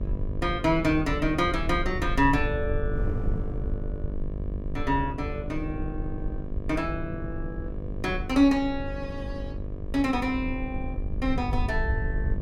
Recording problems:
hum; 50 Hz, harmonics up to 1.3 kHz, SNR 12 dB
low-frequency rumble; below 74 Hz, SNR 7 dB
wind on the microphone; below 160 Hz, SNR 16 dB

